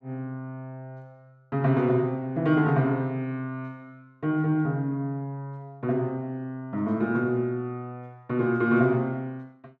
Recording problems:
none

